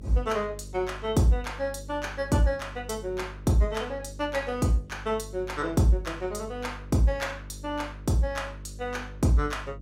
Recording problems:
hum; 50 Hz, harmonics up to 550 Hz, SNR 15 dB

